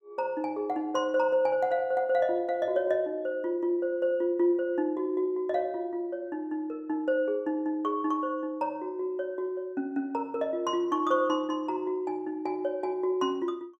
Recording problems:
none

